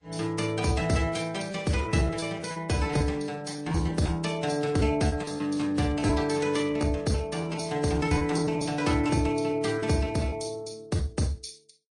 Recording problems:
lossy compression; Vorbis, then MP3, log-spectral distance 4 dB, nothing above 10.1 kHz
packet loss; 10% of the sound replaced, filled with repeated pitch periods

